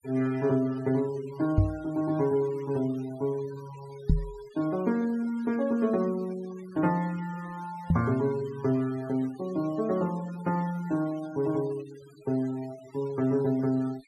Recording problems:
noise reduction artefacts; signal-to-artefact ratio 21 dB
microphone bump; at 1.5 s, at 4 s and at 8 s; peak +9 dB vs average level

